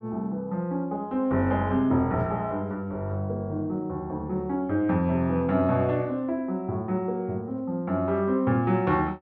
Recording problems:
none

